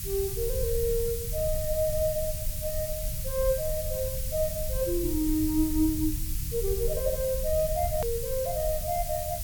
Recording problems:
background hiss; slope +6 dB per octave, SNR 5 dB
rumble; below 80 Hz, SNR 6 dB
click at an edit; at 8 s

